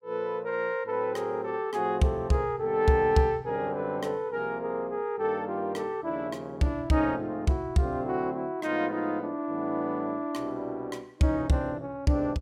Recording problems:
none

